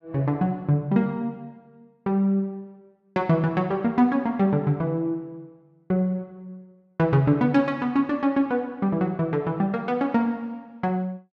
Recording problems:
none

